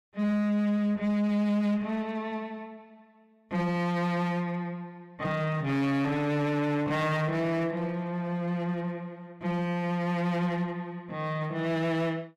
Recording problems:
distortion; hard clipping, uneven, signal-to-distortion ratio 11 dB

